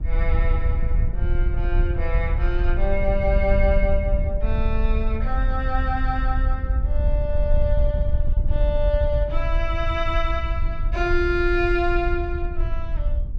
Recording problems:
wind noise; below 64 Hz, SNR -2 dB

